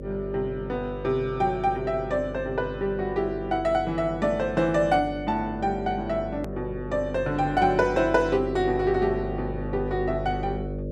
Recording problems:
mains hum; 50 Hz, harmonics up to 600 Hz, SNR 9 dB
click at an edit; at 6.5 s

